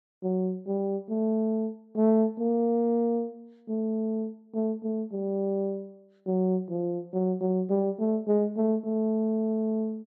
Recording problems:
none

